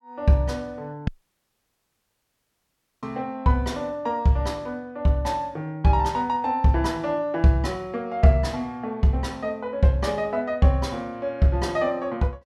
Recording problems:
dropout; at 1 s for 2 s

